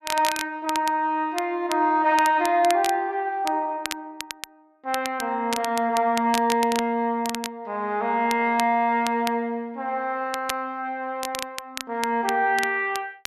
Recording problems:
crackling; vinyl, SNR 11 dB

